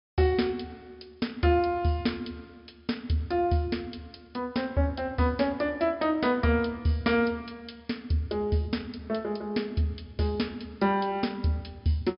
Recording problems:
treble missing; nothing above 5.5 kHz

